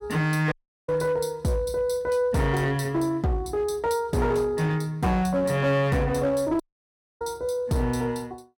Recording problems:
distorted audio; hard clipping, uneven, signal-to-distortion ratio 11 dB
dropout; at 0.5 s and at 6.5 s for 0.5 s

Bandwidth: 17.5 kHz